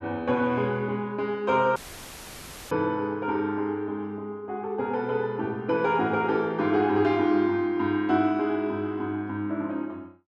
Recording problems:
audio cutting out; at 2 s for 1 s; filled with static

